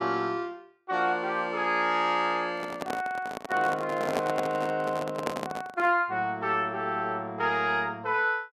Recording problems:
handling noise; from 2.5 to 6 s; peak +1 dB vs average level

